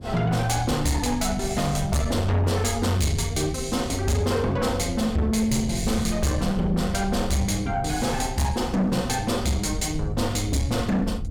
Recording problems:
distorted audio; soft clipping, signal-to-distortion ratio 10 dB
wind noise; below 110 Hz, SNR 10 dB

